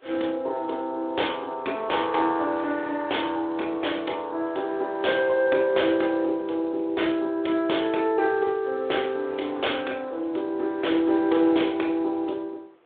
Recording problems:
telephone audio; 280 Hz to 3.6 kHz, Speex
wind on the microphone; below 1.3 kHz, SNR 24 dB

